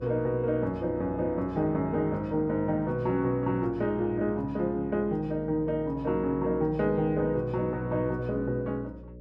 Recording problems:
hum; 60 Hz, harmonics up to 600 Hz, SNR 16 dB

